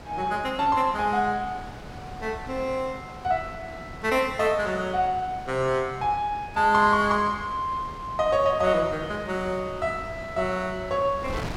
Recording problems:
wind noise; below 890 Hz, SNR 16 dB

